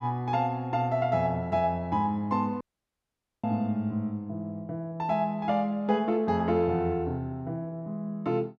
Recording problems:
audio cutting out; at 2.5 s for 1 s

